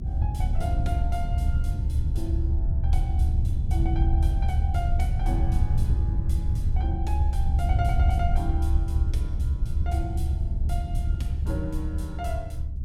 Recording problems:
low-frequency rumble; below 72 Hz, strongest tone 70 Hz, SNR -8 dB
wind on the microphone; below 110 Hz, SNR -7 dB

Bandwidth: 17 kHz